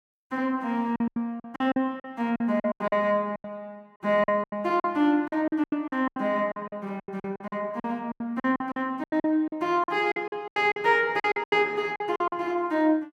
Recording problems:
lost packets; 17% of the sound replaced, filled with silence

